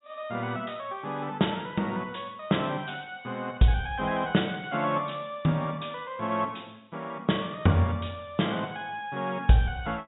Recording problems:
treble cut off; nothing above 4 kHz

